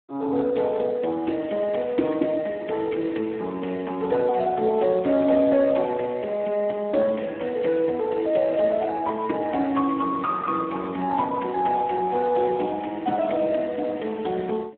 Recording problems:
telephone audio; 220 Hz to 3 kHz, Speex

